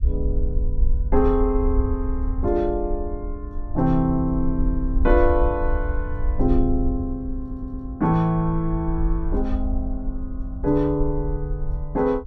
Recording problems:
low-frequency rumble; below 60 Hz, SNR 4 dB
audio stuttering; at 7.5 s

